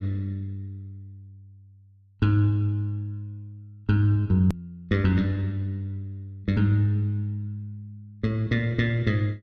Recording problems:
click at an edit; at 4.5 s

